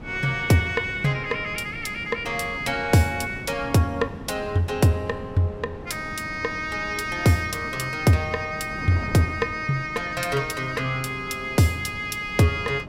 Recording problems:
wind noise; below 390 Hz, SNR 15 dB

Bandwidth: 16 kHz